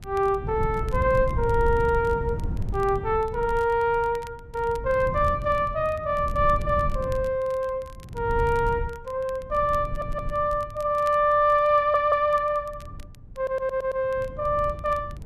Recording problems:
wind on the microphone; below 120 Hz, SNR 9 dB
crackling; vinyl, SNR 29 dB
stutter; at 10 s, at 12 s and at 13 s

